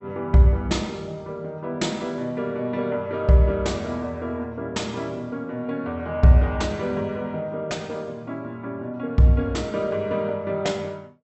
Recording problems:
treble missing; nothing above 7.9 kHz

